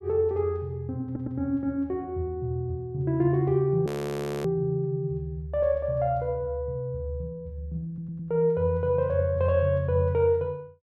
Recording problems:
audio stuttering; at 1 s and at 8 s
audio freezing; at 4 s for 0.5 s

